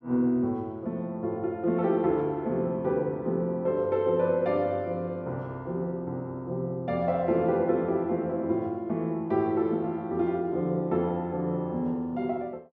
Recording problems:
none

